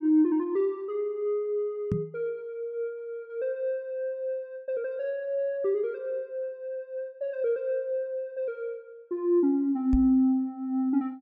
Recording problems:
microphone bump; at 2 s and at 10 s; peak +4 dB vs average level

